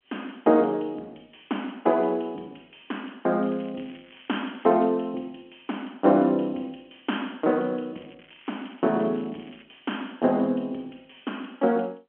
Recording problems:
phone line; 190 Hz to 3.3 kHz, G.711
crackling; from 3.5 to 4.5 s and from 8 to 9.5 s; loose cable, SNR 27 dB

